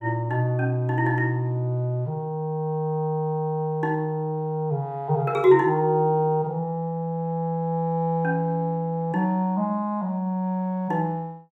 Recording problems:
none

